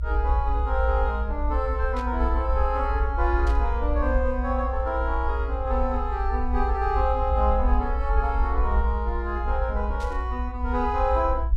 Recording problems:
rumble; below 60 Hz, strongest tone 58 Hz, SNR 0 dB
static burst; at 2 s, at 3.5 s and at 10 s; peak -10 dB vs average level

